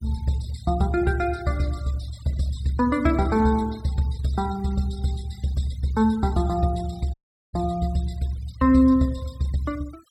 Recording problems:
noise reduction artefacts; signal-to-artefact ratio 22 dB
audio cutting out; at 7 s

